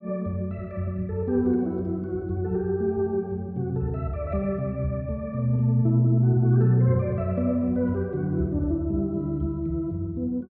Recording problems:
none

